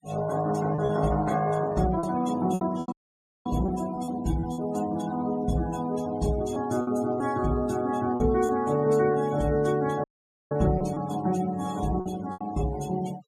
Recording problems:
noise reduction artefacts; signal-to-artefact ratio 19 dB
packet loss; 6% of the sound replaced, filled with repeated pitch periods
dropout; at 3 s for 0.5 s and at 10 s

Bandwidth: 14.5 kHz